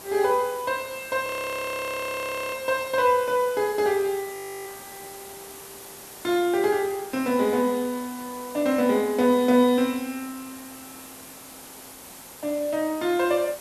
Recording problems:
hiss; slope -3 dB per octave, SNR 16 dB
audio freezing; at 1.5 s for 1.5 s and at 4.5 s

